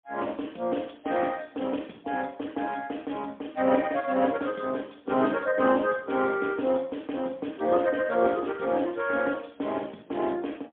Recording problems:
telephone audio; 190 Hz to 3.4 kHz, AMR-NB, then MP3

